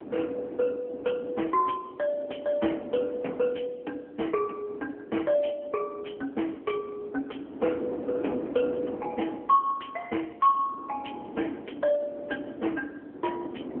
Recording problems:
telephone audio; 240 Hz to 3 kHz, AMR-NB
wind on the microphone; below 470 Hz, SNR 11 dB

